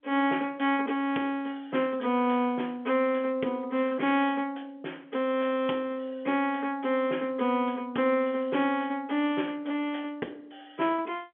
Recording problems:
telephone audio; 190 Hz to 3.4 kHz, G.711

